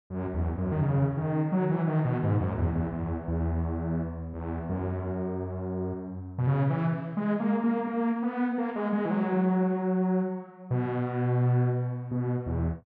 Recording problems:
none

